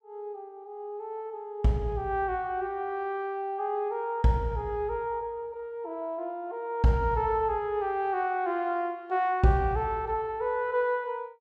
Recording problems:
none

